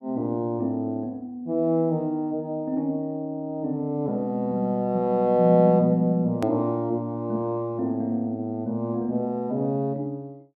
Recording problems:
hard cut with a click; at 6.5 s

